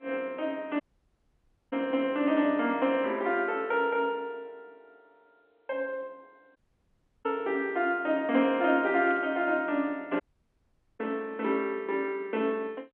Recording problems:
telephone audio; 190 Hz to 3.5 kHz, G.711
audio cutting out; at 1 s for 1 s, at 6.5 s for 0.5 s and at 10 s for 1 s
burst of static; at 9 s; peak -15 dB vs average level

